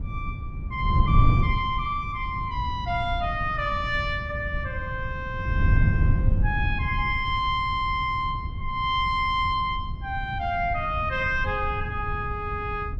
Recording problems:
wind on the microphone; below 110 Hz, SNR 2 dB

